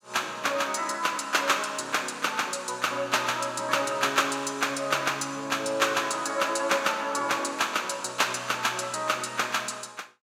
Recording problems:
none

